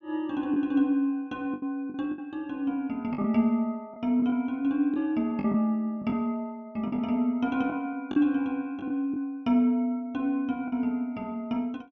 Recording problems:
lost packets; 6% of the sound replaced, filled with the last packet

